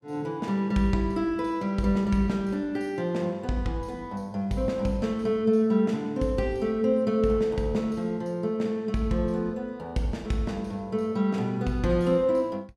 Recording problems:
none

